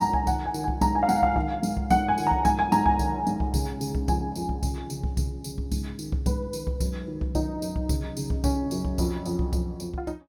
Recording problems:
none

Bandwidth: 18 kHz